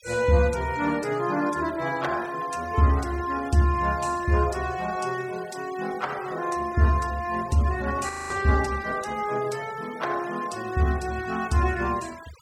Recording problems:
denoising artefacts; signal-to-artefact ratio 19 dB
audio freezing; at 8 s

